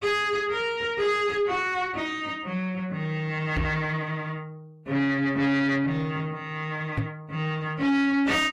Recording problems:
lossy codec; AAC, log-spectral distance 2 dB, nothing above 15.5 kHz
distortion; soft clipping, signal-to-distortion ratio 8 dB
knock on the microphone; at 3.5 s and at 7 s; peak +3 dB vs average level

